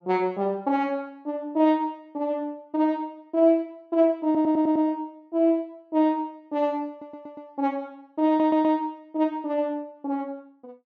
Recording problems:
stutter; at 4.5 s, at 7 s and at 8.5 s

